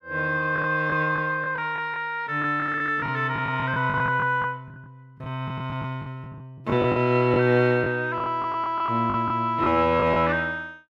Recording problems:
lost packets; 11% of the sound replaced, filled with the last packet

